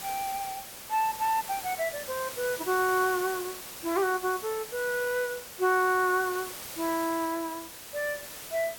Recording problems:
hiss; slope -1 dB per octave, SNR 9 dB

